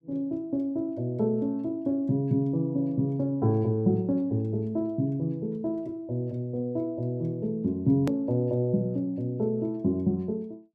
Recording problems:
click at an edit; at 8 s

